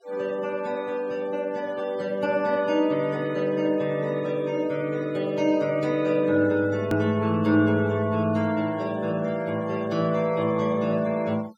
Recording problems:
denoising artefacts; signal-to-artefact ratio 23 dB
hard cut with a click; at 7 s

